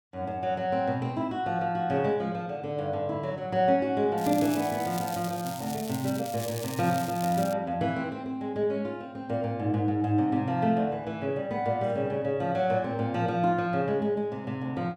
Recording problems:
crackling; from 4 to 7.5 s; loose cable, SNR 12 dB

